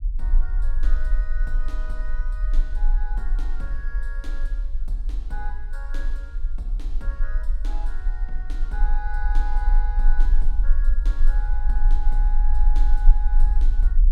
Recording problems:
low-frequency rumble; below 36 Hz, strongest tone 18 Hz, SNR -15 dB

